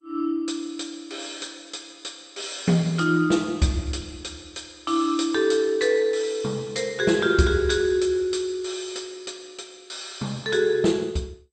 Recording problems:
lossy compression; MP2, log-spectral distance 5 dB, nothing above 8.5 kHz

